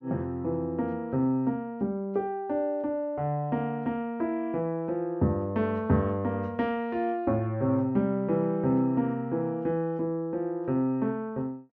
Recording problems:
treble missing; nothing above 8 kHz

